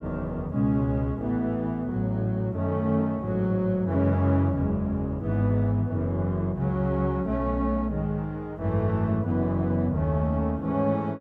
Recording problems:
none

